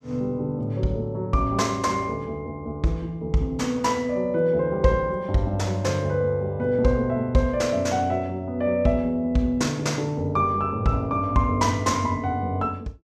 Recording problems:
none

